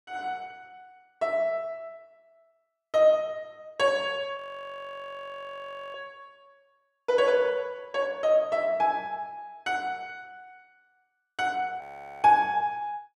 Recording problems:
frozen audio; at 4.5 s for 1.5 s and at 12 s

